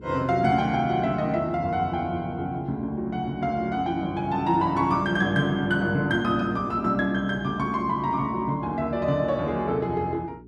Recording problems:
electrical hum; 60 Hz, harmonics up to 420 Hz, SNR 19 dB

